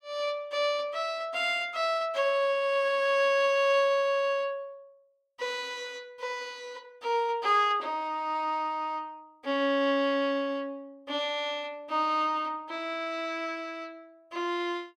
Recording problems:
none

